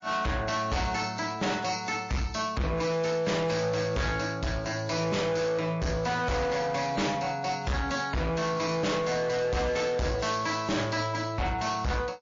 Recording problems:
codec artefacts; MP3, log-spectral distance 4 dB, nothing above 6.5 kHz
distorted audio; hard clipping, signal-to-distortion ratio 7 dB

